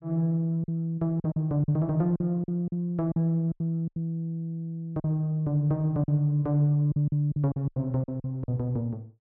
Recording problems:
packet loss; 10% of the sound replaced, filled with silence

